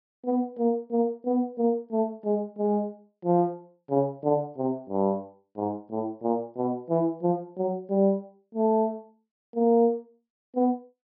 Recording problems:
treble missing; nothing above 5.3 kHz

